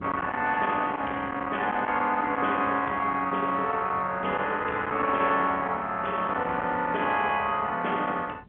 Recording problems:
telephone audio; 220 Hz to 3.3 kHz, G.711
distorted audio; soft clipping, signal-to-distortion ratio 13 dB
wind noise; below 1.4 kHz, SNR 14 dB

